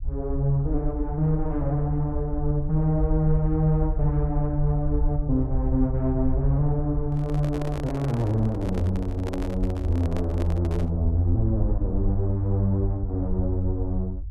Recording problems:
rumble; below 64 Hz, SNR 6 dB
microphone handling noise; from 7 to 11 s; peak -5 dB vs average level

